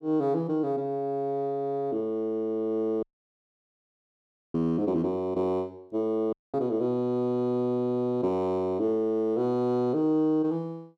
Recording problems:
dropout; at 3 s for 1.5 s and at 6.5 s

